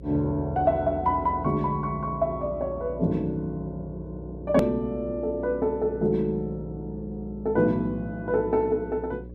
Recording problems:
hum; 60 Hz, harmonics up to 540 Hz, SNR 15 dB
click at an edit; at 4.5 s

